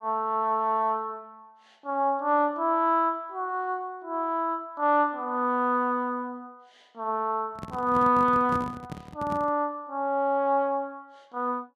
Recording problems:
handling noise; from 7.5 to 9.5 s; peak -5 dB vs average level

